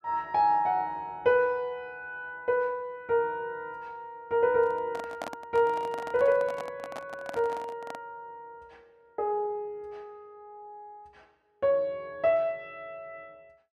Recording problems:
handling noise; from 4.5 to 8 s; peak -4 dB vs average level

